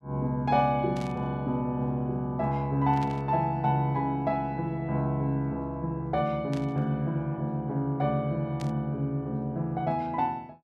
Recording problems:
burst of static; 4 times, first at 1 s; peak -11 dB vs average level

